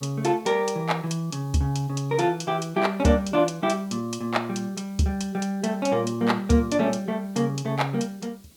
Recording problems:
hiss; SNR 29 dB

